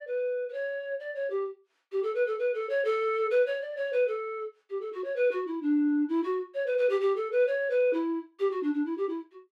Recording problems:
none

